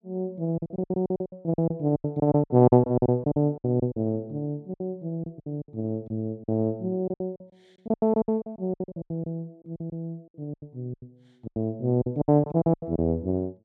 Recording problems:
lost packets; 19% of the sound replaced, filled with silence

